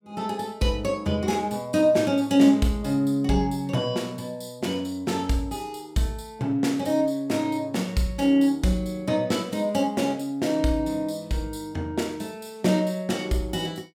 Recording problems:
none

